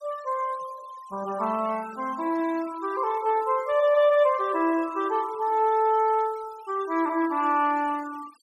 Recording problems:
noise reduction artefacts; signal-to-artefact ratio 22 dB

